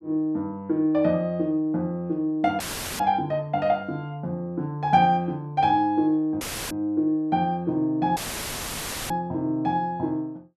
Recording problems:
dropout; at 2.5 s, at 6.5 s and at 8 s for 1 s; filled with static

